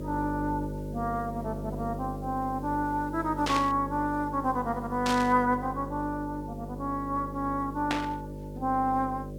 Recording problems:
hum; 50 Hz, harmonics up to 600 Hz, SNR 8 dB
hiss; slope 0 dB per octave, SNR 30 dB
burst of static; at 3.5 s, at 5 s and at 8 s; peak +3 dB vs average level

